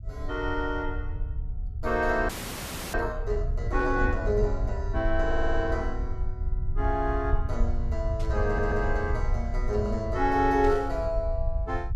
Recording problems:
low-frequency rumble; below 70 Hz, SNR 3 dB
audio freezing; at 2.5 s for 0.5 s
static burst; at 4 s, at 8 s and at 11 s; peak -14 dB vs average level
audio stuttering; at 5.5 s and at 8.5 s

